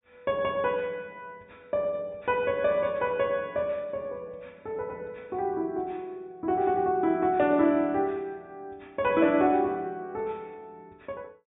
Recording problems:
treble cut off; nothing above 4 kHz

